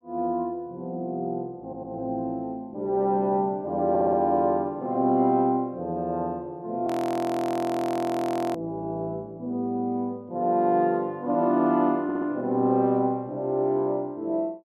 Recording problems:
stutter; at 1.5 s, at 4 s and at 12 s
frozen audio; at 7 s for 1.5 s

